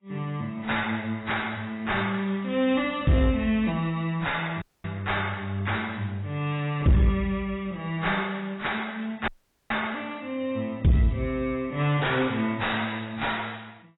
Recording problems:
lossy codec; AAC, log-spectral distance 4 dB, nothing above 3.8 kHz
distorted audio; soft clipping, signal-to-distortion ratio 9 dB
audio cutting out; at 4.5 s and at 9.5 s

